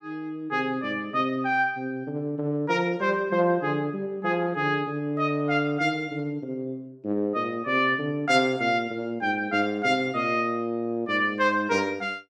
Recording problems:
none

